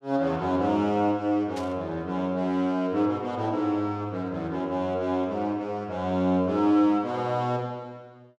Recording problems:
static burst; at 1.5 s; peak -11 dB vs average level

